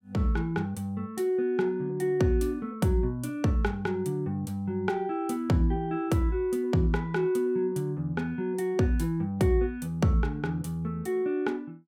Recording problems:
none

